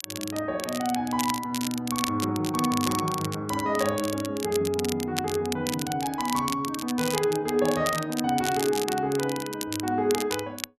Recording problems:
crackling; vinyl, SNR 7 dB

